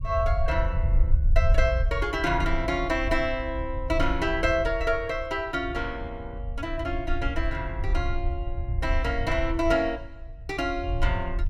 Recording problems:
low-frequency rumble; below 68 Hz, SNR 2 dB

